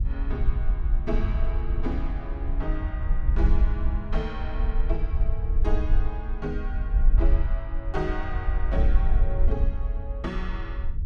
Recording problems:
wind on the microphone; below 54 Hz, SNR -7 dB

